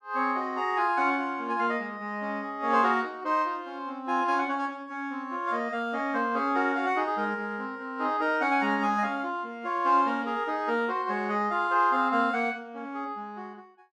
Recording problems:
none

